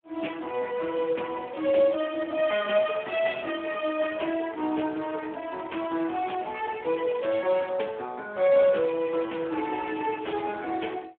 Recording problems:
phone line; 260 Hz to 3.3 kHz, Speex

